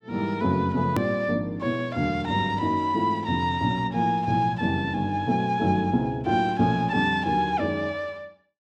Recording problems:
edit click; at 1 s

